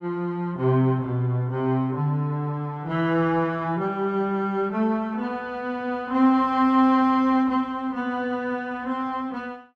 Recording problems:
none

